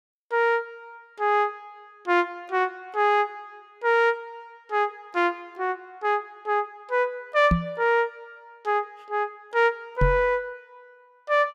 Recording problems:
microphone bump; at 7.5 s and at 10 s; peak +6 dB vs average level

